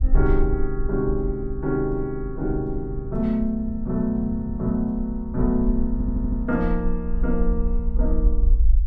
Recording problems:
low-frequency rumble; below 50 Hz, SNR 3 dB
wind on the microphone; below 130 Hz, SNR 14 dB
audio stuttering; at 6 s

